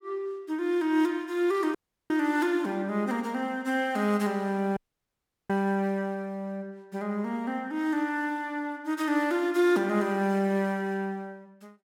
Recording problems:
audio cutting out; at 2 s and at 5 s for 0.5 s

